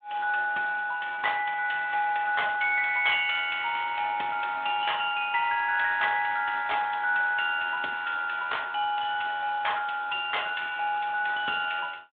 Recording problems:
phone line; 320 Hz to 3.5 kHz, Speex

